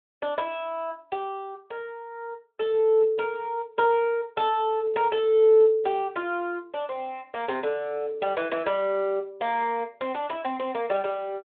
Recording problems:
telephone audio; 220 Hz to 3.7 kHz, Speex

